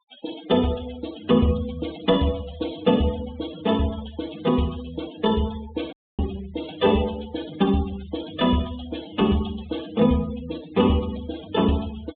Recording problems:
low-pass filter; nothing above 4 kHz
denoising artefacts; signal-to-artefact ratio 18 dB
dropout; at 6 s

